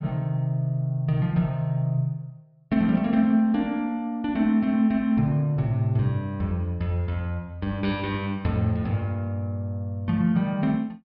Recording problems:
low-pass filter; nothing above 5.5 kHz

